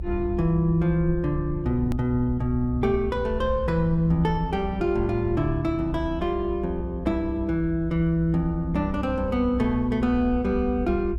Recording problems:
low-frequency rumble; below 68 Hz, strongest tone 64 Hz, SNR 9 dB
hard cut with a click; at 2 s

